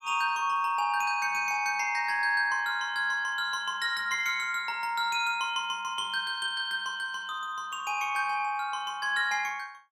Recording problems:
none

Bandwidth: 16 kHz